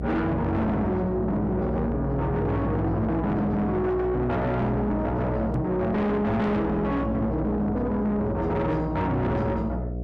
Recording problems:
distortion; soft clipping, signal-to-distortion ratio 8 dB
hum; 60 Hz, harmonics up to 720 Hz, SNR 6 dB
knock on the microphone; at 5.5 s; peak +2 dB vs average level

